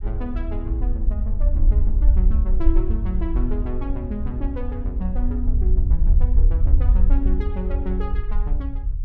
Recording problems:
rumble; below 56 Hz, SNR -9 dB

